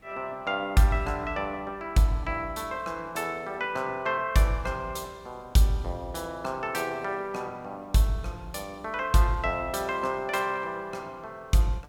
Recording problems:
background hiss; slope -6 dB per octave, SNR 29 dB

